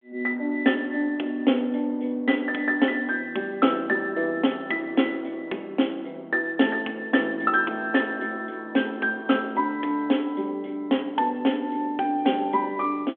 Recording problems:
phone line; 220 Hz to 3.5 kHz, G.726

